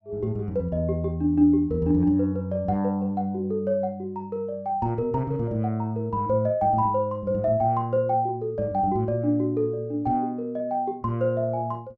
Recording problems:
none

